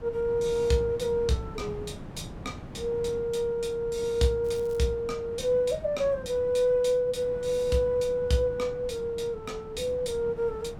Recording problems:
wind on the microphone; below 330 Hz, SNR 15 dB
crackling; at 4.5 s; loose cable, SNR 28 dB

